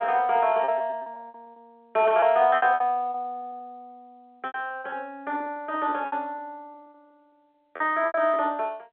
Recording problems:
phone line; 320 Hz to 3.5 kHz, G.711
packet loss; 14% of the sound replaced, filled with repeated pitch periods

